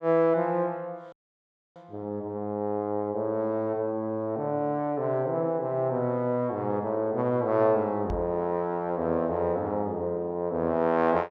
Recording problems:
dropout; at 1 s for 0.5 s
microphone bump; at 8 s; peak -4 dB vs average level

